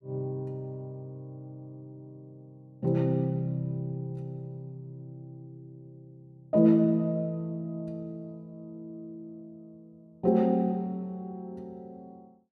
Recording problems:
none

